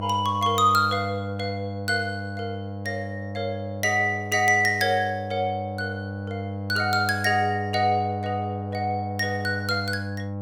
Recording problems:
electrical hum; 50 Hz, harmonics up to 1.1 kHz, SNR 8 dB

